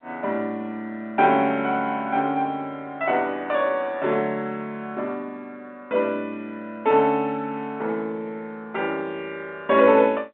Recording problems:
telephone audio; 240 Hz to 3.7 kHz, G.711

